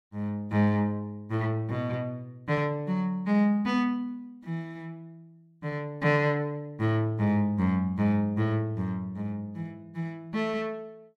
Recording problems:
none

